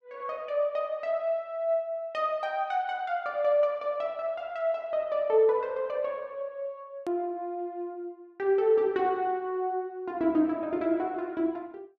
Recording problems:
click at an edit; at 7 s

